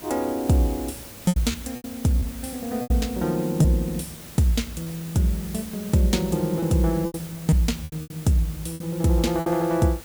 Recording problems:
background hiss; slope -3 dB per octave, SNR 15 dB
packet loss; 8% of the sound replaced, filled with repeated pitch periods

